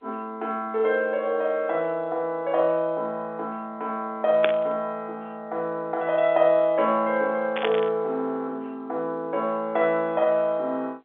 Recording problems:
telephone audio; 240 Hz to 3.8 kHz, G.711
burst of static; at 4.5 s and at 7.5 s; peak +4 dB vs average level

